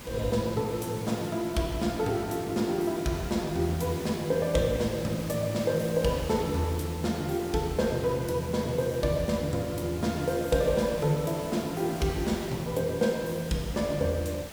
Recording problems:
background hiss; slope -3 dB per octave, SNR 13 dB

